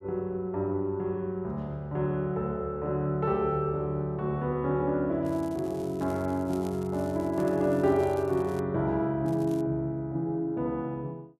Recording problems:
crackling; from 5.5 to 8.5 s and at 9.5 s; loose cable, SNR 24 dB

